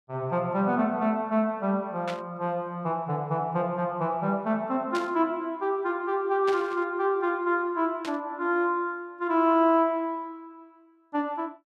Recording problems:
static burst; 4 times, first at 2 s; peak -5 dB vs average level

